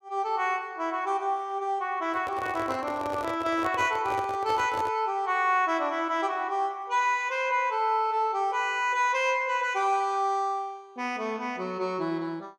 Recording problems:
handling noise; from 2 to 5 s; peak -5 dB vs average level

